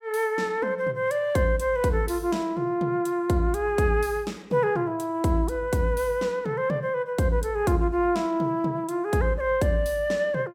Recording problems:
none

